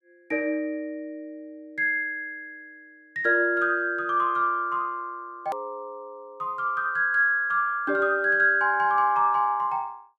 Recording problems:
hard cut with a click; at 5.5 s

